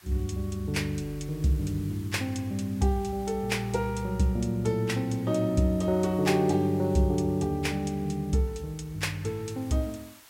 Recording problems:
hiss; slope 0 dB per octave, SNR 24 dB

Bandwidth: 16 kHz